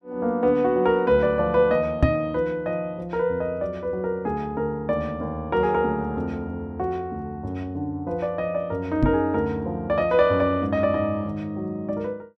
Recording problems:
microphone thump; at 2 s and at 9 s; peak +8 dB vs average level

